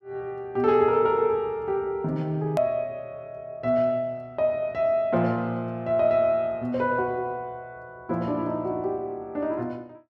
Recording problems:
click at an edit; at 2.5 s

